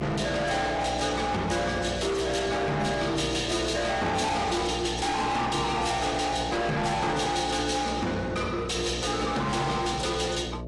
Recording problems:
lossy compression; AAC, log-spectral distance 4 dB, nothing above 10.7 kHz
distorted audio; soft clipping, signal-to-distortion ratio 7 dB
hum; 60 Hz, harmonics up to 780 Hz, SNR 11 dB

